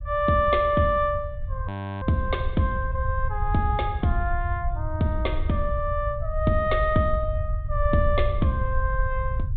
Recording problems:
treble missing; nothing above 4 kHz
low-frequency rumble; below 84 Hz, SNR 4 dB
audio freezing; at 1.5 s

